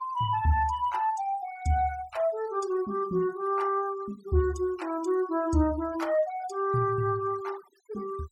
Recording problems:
denoising artefacts; signal-to-artefact ratio 22 dB

